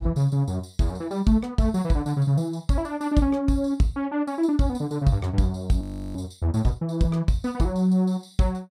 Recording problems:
frozen audio; at 6 s

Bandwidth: 15.5 kHz